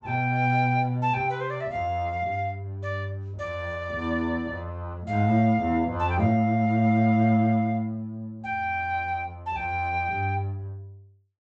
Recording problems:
treble missing; nothing above 8 kHz

